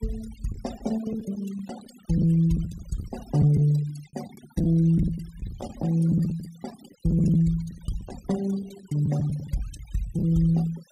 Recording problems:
denoising artefacts; signal-to-artefact ratio 19 dB
lost packets; 9% of the sound replaced, filled with the last packet

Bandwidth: 15.5 kHz